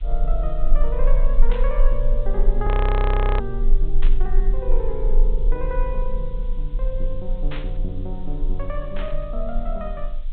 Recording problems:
treble missing; nothing above 4 kHz
hiss; SNR 27 dB
rumble; below 32 Hz, strongest tone 20 Hz, SNR -5 dB
static burst; 4 times, first at 1.5 s; peak -2 dB vs average level
frozen audio; at 2.5 s for 0.5 s

